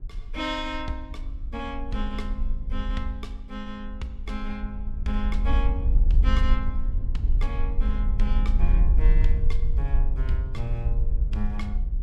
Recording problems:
wind noise; below 52 Hz, SNR -7 dB

